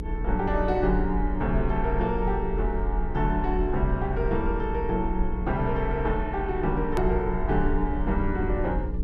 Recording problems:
electrical hum; 60 Hz, harmonics up to 480 Hz, SNR 9 dB
low-frequency rumble; below 44 Hz, strongest tone 42 Hz, SNR 5 dB
click at an edit; at 7 s

